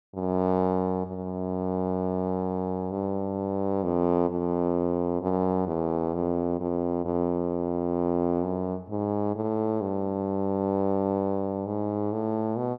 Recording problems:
none

